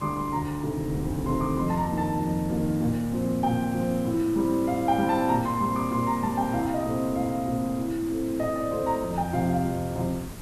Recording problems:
background hiss; SNR 19 dB
wind on the microphone; below 230 Hz, SNR 16 dB

